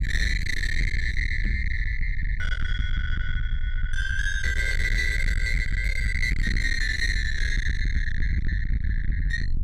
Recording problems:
distortion; soft clipping, signal-to-distortion ratio 7 dB
low-frequency rumble; below 76 Hz, SNR 1 dB
microphone thump; at 1.5 s and at 6.5 s; peak -2 dB vs average level

